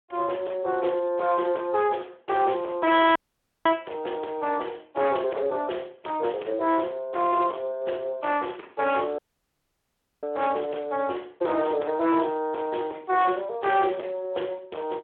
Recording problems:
phone line; 300 Hz to 3.5 kHz, Speex
distortion; hard clipping, uneven, signal-to-distortion ratio 7 dB
audio cutting out; at 3 s and at 9 s for 1 s

